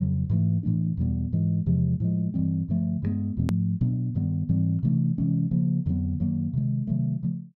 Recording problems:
click at an edit; at 3.5 s

